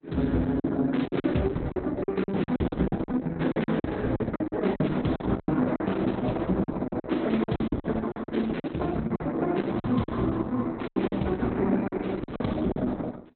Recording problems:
lossy compression; Opus, log-spectral distance 4 dB, nothing above 4 kHz
lost packets; 13% of the sound replaced, filled with silence

